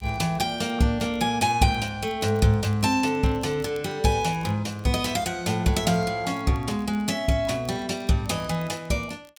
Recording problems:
crackling; vinyl, SNR 29 dB

